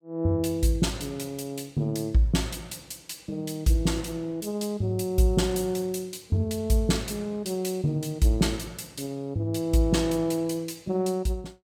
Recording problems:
none

